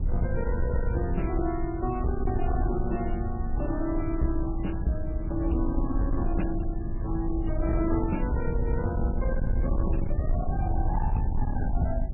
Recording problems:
lossy codec; MP3, log-spectral distance 2 dB, nothing above 2.7 kHz
distorted audio; soft clipping, signal-to-distortion ratio 11 dB
rumble; below 82 Hz, SNR 0 dB

